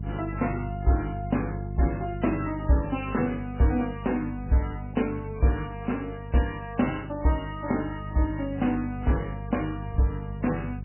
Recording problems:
codec artefacts; MP3, log-spectral distance 3 dB, nothing above 2.7 kHz
hum; 50 Hz, harmonics up to 450 Hz, SNR 8 dB

